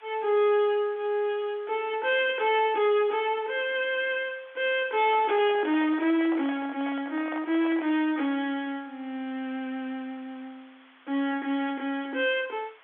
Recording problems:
telephone audio; 220 Hz to 3.4 kHz, G.711
distorted audio; soft clipping, signal-to-distortion ratio 11 dB
background hiss; SNR 28 dB
microphone handling noise; from 5 to 8 s; peak -8 dB vs average level

